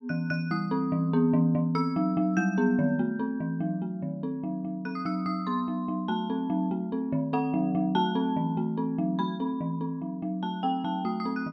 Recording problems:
none

